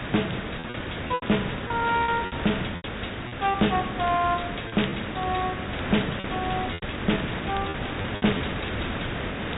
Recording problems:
low-pass filter; nothing above 4 kHz
distorted audio; hard clipping, uneven, signal-to-distortion ratio 11 dB
background hiss; SNR 4 dB
crackling; vinyl, SNR 21 dB
packet loss; 8% of the sound replaced, filled with repeated pitch periods

